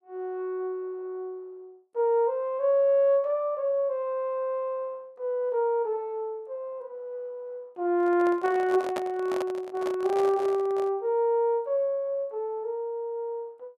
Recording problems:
microphone handling noise; from 8 to 11 s; peak -1 dB vs average level

